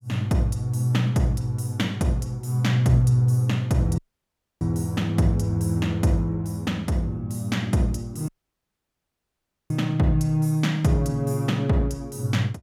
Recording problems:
dropout; at 4 s for 0.5 s and at 8.5 s for 1.5 s

